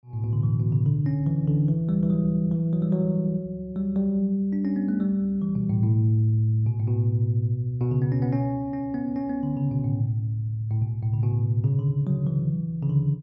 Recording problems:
none

